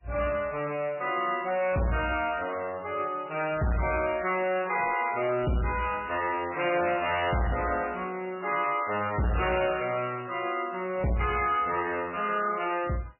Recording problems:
lossy compression; MP3, log-spectral distance 8 dB, nothing above 2.4 kHz
distorted audio; soft clipping, signal-to-distortion ratio 10 dB

